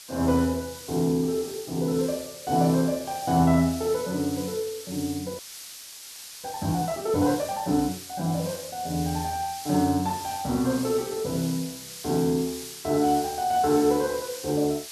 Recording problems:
hiss; slope +4 dB per octave, SNR 12 dB
audio freezing; at 5.5 s for 1 s

